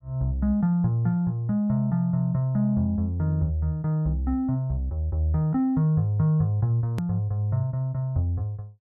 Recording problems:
click at an edit; at 7 s

